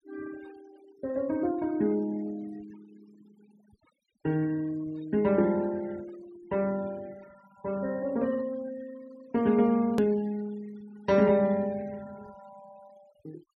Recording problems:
denoising artefacts; signal-to-artefact ratio 24 dB
click at an edit; at 10 s

